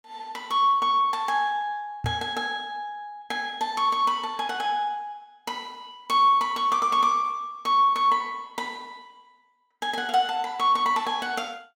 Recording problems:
microphone bump; at 2 s; peak -2 dB vs average level

